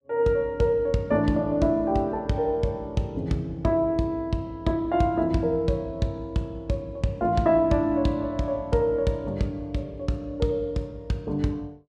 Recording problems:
none

